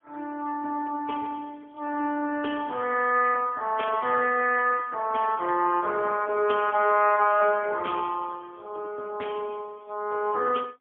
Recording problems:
telephone audio; 260 Hz to 2.5 kHz, AMR-NB, then MP3

